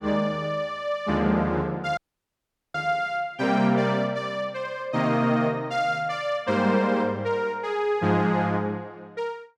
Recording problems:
audio cutting out; at 2 s for 1 s

